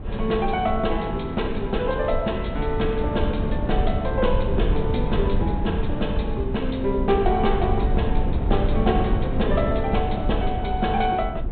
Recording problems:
treble cut off; nothing above 4 kHz
low-frequency rumble; below 60 Hz, SNR 7 dB
wind on the microphone; below 160 Hz, SNR 4 dB

